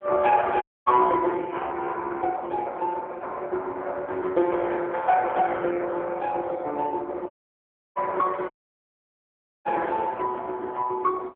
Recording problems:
phone line; 280 Hz to 3.4 kHz, AMR-NB
dropout; at 0.5 s, at 7.5 s for 0.5 s and at 8.5 s for 1 s

